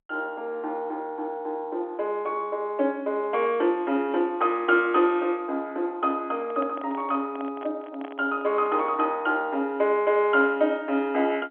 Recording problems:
phone line; 240 Hz to 3.4 kHz, G.711
handling noise; from 6.5 to 9 s; peak -9 dB vs average level

